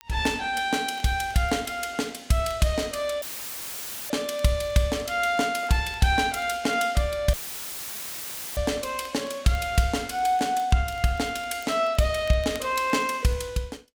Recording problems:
crackle; vinyl, SNR 28 dB
audio cutting out; at 3 s for 1 s and at 7.5 s for 1 s; filled with static

